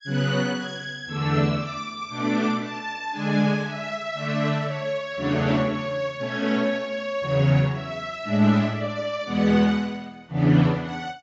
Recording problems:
lossy codec; AAC, log-spectral distance 2 dB

